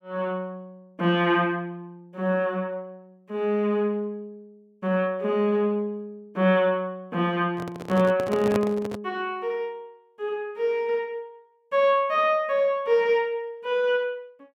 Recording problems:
handling noise; from 7.5 to 9 s; peak +1 dB vs average level

